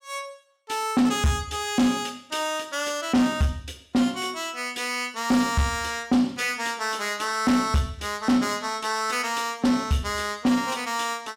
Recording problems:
distortion; soft clipping, signal-to-distortion ratio 11 dB

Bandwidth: 17 kHz